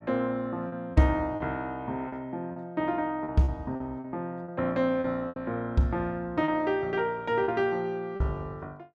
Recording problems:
lost packets; 7% of the sound replaced, filled with repeated pitch periods

